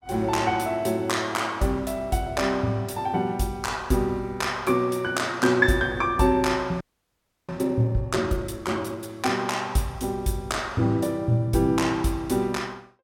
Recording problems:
frozen audio; at 7 s for 0.5 s

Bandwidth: 17.5 kHz